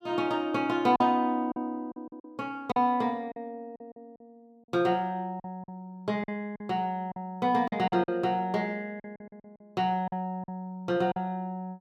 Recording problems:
lost packets; 9% of the sound replaced, filled with silence

